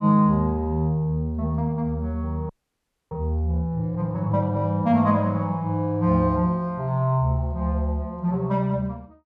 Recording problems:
audio freezing; at 2.5 s for 0.5 s

